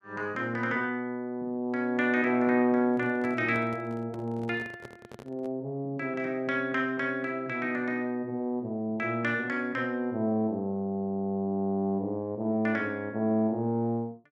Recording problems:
handling noise; from 3 to 5.5 s; peak -10 dB vs average level

